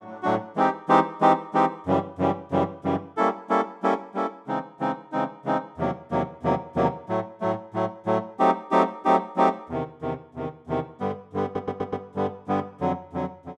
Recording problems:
stutter; at 11 s

